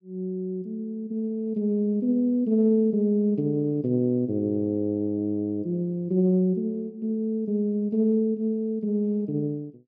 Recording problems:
none

